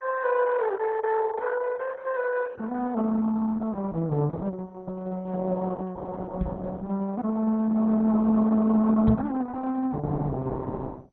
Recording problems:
lossy compression; Opus, then MP2, log-spectral distance 3 dB
microphone thump; at 6.5 s and at 9 s; peak +5 dB vs average level

